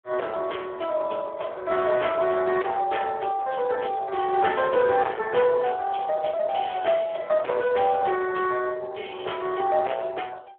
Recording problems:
telephone audio; 340 Hz to 3.3 kHz, Speex
distorted audio; hard clipping, signal-to-distortion ratio 7 dB

